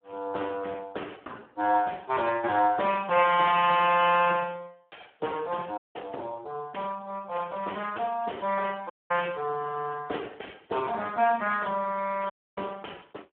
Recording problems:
phone line; 260 Hz to 3 kHz, Speex
audio cutting out; at 6 s, at 9 s and at 12 s

